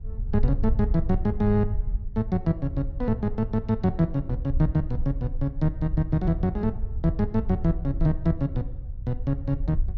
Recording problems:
rumble; below 62 Hz, SNR 6 dB

